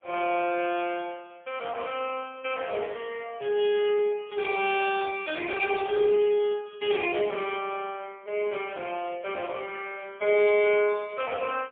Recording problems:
phone line; 300 Hz to 3.4 kHz, AMR-NB, then MP3

